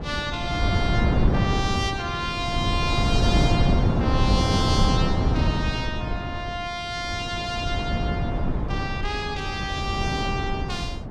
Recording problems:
wind noise; below 240 Hz, SNR -3 dB

